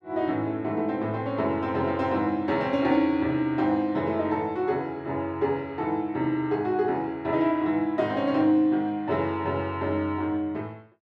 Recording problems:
none

